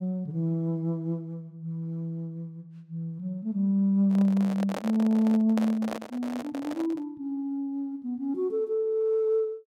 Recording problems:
handling noise; from 4 to 7 s; peak -2 dB vs average level

